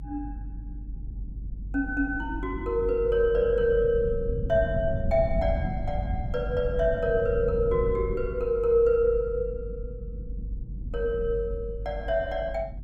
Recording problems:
low-frequency rumble; below 110 Hz, strongest tone 48 Hz, SNR 8 dB

